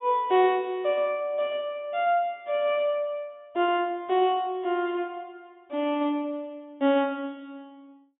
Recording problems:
low-pass filter; nothing above 4 kHz

